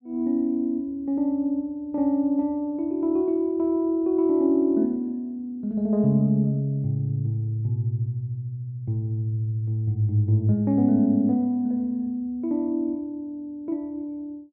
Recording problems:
none

